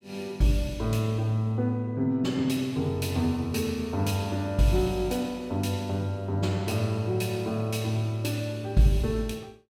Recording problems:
none

